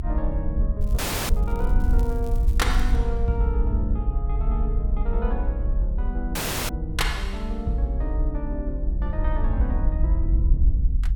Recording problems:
low-frequency rumble; below 56 Hz, SNR -5 dB
crackling; from 1 to 3 s; loose cable, SNR 21 dB
audio cutting out; at 1 s and at 6.5 s

